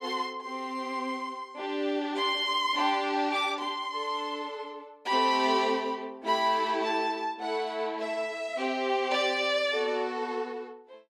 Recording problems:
none

